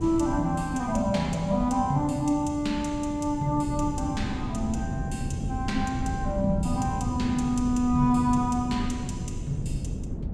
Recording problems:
wind on the microphone; below 200 Hz, SNR 6 dB

